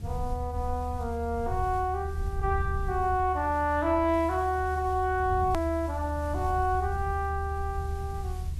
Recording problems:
background hiss; slope -2 dB per octave, SNR 25 dB
rumble; below 78 Hz, strongest tone 76 Hz, SNR 6 dB
click at an edit; at 5.5 s

